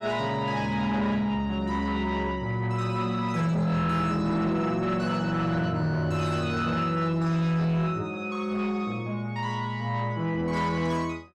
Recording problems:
distorted audio; soft clipping, signal-to-distortion ratio 11 dB

